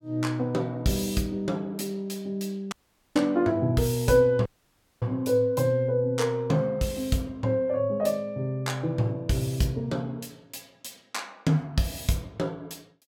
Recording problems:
dropout; at 2.5 s and at 4.5 s for 0.5 s

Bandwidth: 17 kHz